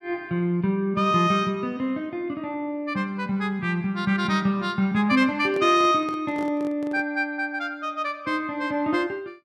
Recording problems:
microphone handling noise; from 5.5 to 7 s; peak -8 dB vs average level

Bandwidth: 12.5 kHz